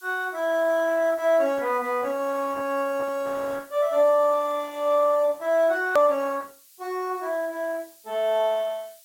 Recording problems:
lossy compression; Opus, log-spectral distance 2 dB, nothing above 16.6 kHz
hiss; slope +7 dB per octave, SNR 26 dB
hard cut with a click; at 6 s

